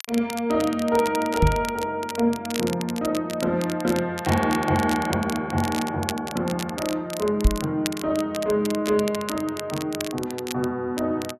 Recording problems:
crackle; vinyl, SNR 11 dB
microphone bump; at 1.5 s and at 7.5 s; peak +9 dB vs average level

